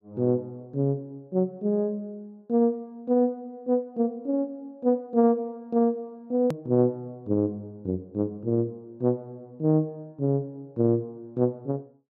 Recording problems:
hard cut with a click; at 6.5 s

